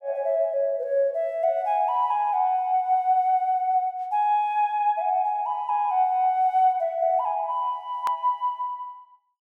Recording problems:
click at an edit; at 8 s

